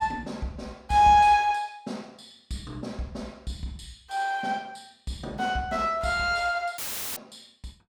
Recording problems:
audio cutting out; at 7 s; filled with static

